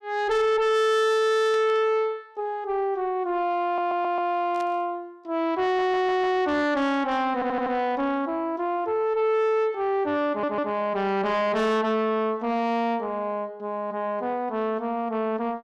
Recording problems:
distortion; soft clipping, signal-to-distortion ratio 7 dB
static burst; at 1.5 s and at 4.5 s; peak -13 dB vs average level
stutter; 4 times, first at 3.5 s

